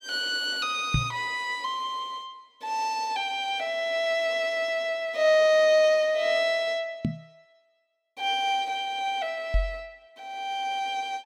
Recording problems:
knock on the microphone; at 1 s, at 7 s and at 9.5 s; peak +4 dB vs average level

